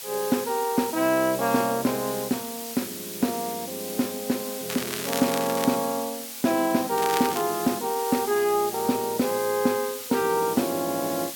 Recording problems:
hiss; slope +3 dB per octave, SNR 8 dB
crackling; at 4.5 s and at 7 s; loose cable, SNR 8 dB

